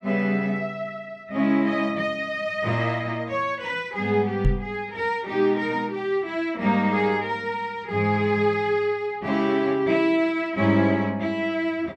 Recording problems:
knock on the microphone; at 4.5 s; peak +5 dB vs average level

